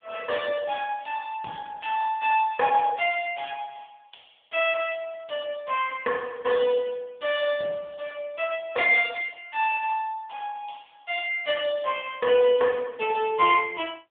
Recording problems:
telephone audio; 260 Hz to 3.4 kHz, AMR-NB

